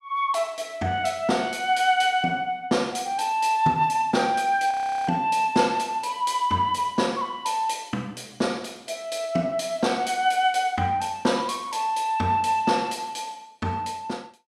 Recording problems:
audio freezing; at 4.5 s

